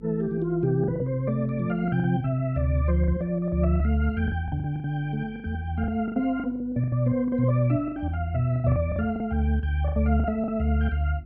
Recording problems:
hum; 50 Hz, harmonics up to 350 Hz, SNR 23 dB
lost packets; 12% of the sound replaced, filled with the last packet

